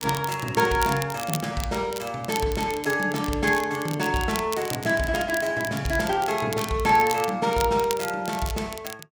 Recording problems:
crackle; vinyl, SNR 12 dB

